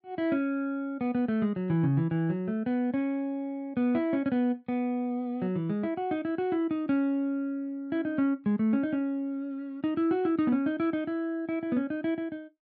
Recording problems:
none

